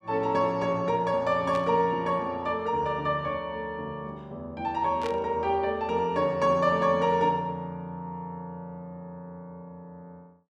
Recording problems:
static burst; at 1.5 s and at 5 s; peak -8 dB vs average level

